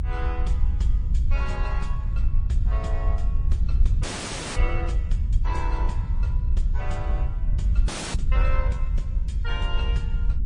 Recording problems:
codec artefacts; MP3, then MP3, log-spectral distance 2 dB, nothing above 9.2 kHz
rumble; below 66 Hz, SNR -10 dB
frozen audio; at 4 s for 0.5 s and at 8 s

